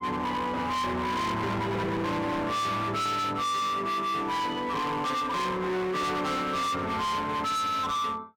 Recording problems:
distortion; hard clipping, uneven, signal-to-distortion ratio 6 dB

